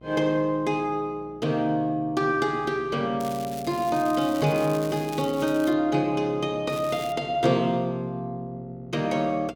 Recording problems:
hum; 60 Hz, harmonics up to 1.4 kHz, SNR 24 dB
crackling; from 3 to 5.5 s and at 6.5 s; loose cable, SNR 17 dB

